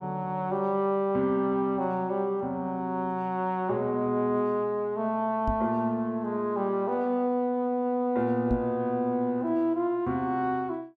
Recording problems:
microphone thump; at 5.5 s and at 8.5 s; peak 0 dB vs average level

